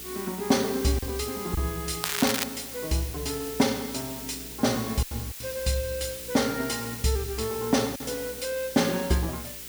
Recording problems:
hum; 60 Hz, harmonics up to 480 Hz, SNR 21 dB
background hiss; slope +3 dB per octave, SNR 9 dB
packet loss; 3% of the sound replaced, filled with silence
crackling; at 2 s; loose cable, SNR 1 dB

